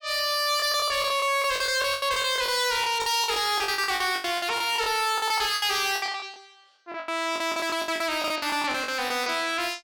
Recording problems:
distorted audio; hard clipping, uneven, signal-to-distortion ratio 7 dB
lost packets; 18% of the sound replaced, filled with the last packet

